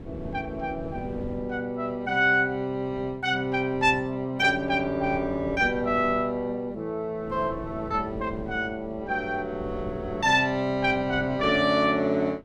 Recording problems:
wind on the microphone; below 310 Hz, SNR 16 dB

